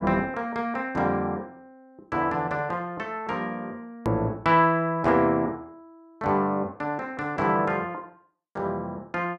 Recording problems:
edit click; at 4 s

